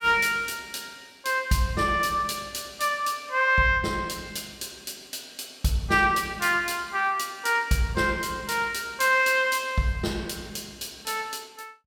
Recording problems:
none

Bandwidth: 17 kHz